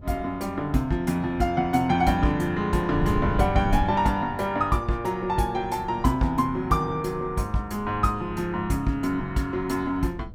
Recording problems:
wind on the microphone; below 130 Hz, SNR 13 dB

